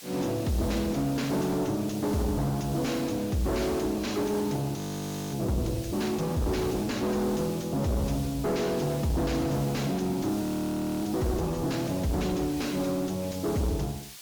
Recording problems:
codec artefacts; MP3, then MP3, log-spectral distance 3 dB, nothing above 19.5 kHz
distortion; soft clipping, signal-to-distortion ratio 7 dB
background hiss; slope +3 dB per octave, SNR 14 dB
frozen audio; at 5 s for 0.5 s and at 10 s for 0.5 s

